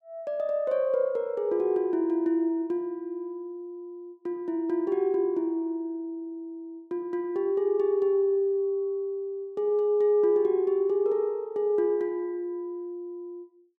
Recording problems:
none

